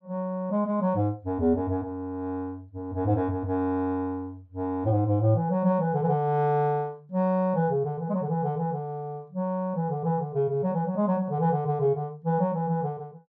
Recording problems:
none

